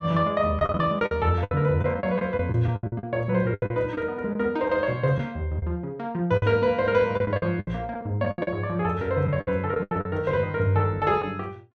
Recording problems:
lost packets; 11% of the sound replaced, filled with the last packet

